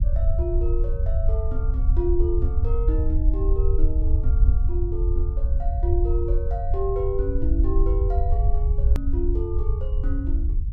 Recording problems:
rumble; below 66 Hz, SNR -7 dB
hard cut with a click; at 9 s

